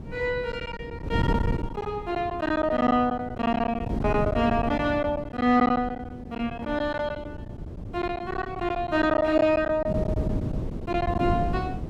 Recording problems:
wind noise; below 270 Hz, SNR 7 dB
packet loss; 12% of the sound replaced, filled with silence

